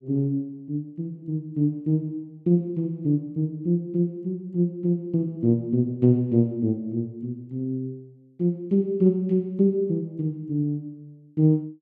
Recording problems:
none

